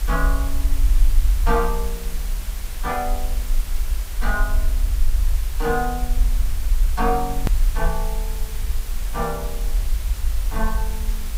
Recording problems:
hiss; slope -1 dB per octave, SNR 9 dB
rumble; below 48 Hz, SNR -2 dB
hard cut with a click; at 7.5 s

